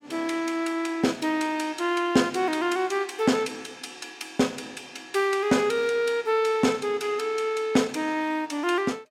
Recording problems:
none

